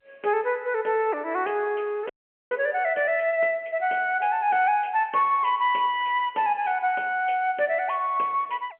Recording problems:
telephone audio; 320 Hz to 3.2 kHz, G.711
audio freezing; at 2 s

